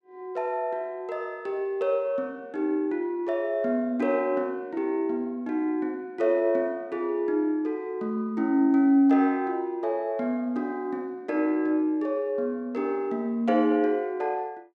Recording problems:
none

